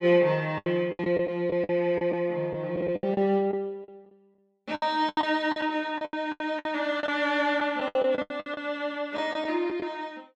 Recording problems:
packet loss; 15% of the sound replaced, filled with the last packet

